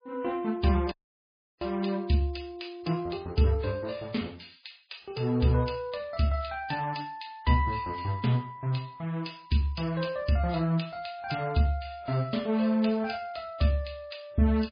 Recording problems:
lossy codec; MP3, log-spectral distance 5 dB, nothing above 11 kHz
dropout; at 1 s for 0.5 s

